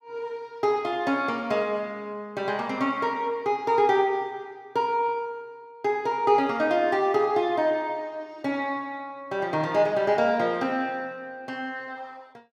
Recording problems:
none

